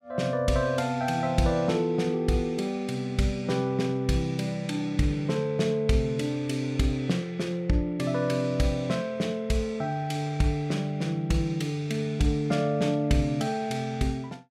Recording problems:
none

